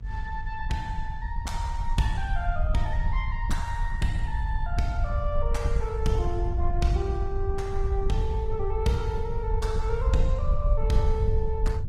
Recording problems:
lossy compression; Opus, log-spectral distance 2 dB
hum; 50 Hz, harmonics up to 700 Hz, SNR 18 dB
rumble; below 66 Hz, SNR -1 dB

